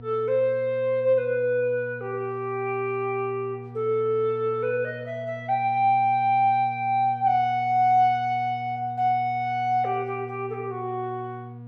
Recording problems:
mains hum; 60 Hz, harmonics up to 960 Hz, SNR 16 dB

